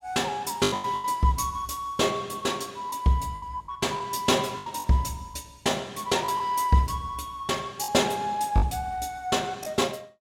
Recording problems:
packet loss; 7% of the sound replaced, filled with the last packet

